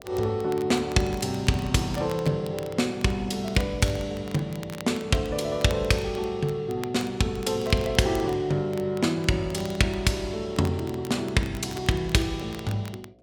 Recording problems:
hum; 60 Hz, harmonics up to 720 Hz, SNR 29 dB
crackle; vinyl, SNR 20 dB

